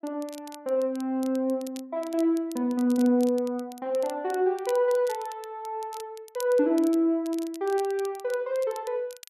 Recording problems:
crackle; vinyl, SNR 21 dB

